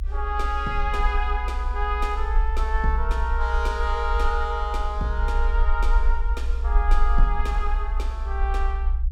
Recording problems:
rumble; below 60 Hz, SNR -2 dB

